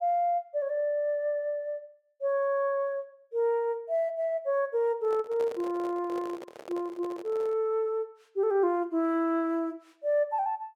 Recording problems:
microphone handling noise; from 5 to 7.5 s; peak -8 dB vs average level

